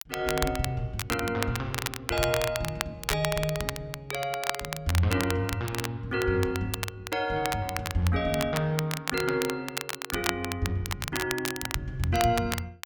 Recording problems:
crackle; vinyl, SNR 5 dB

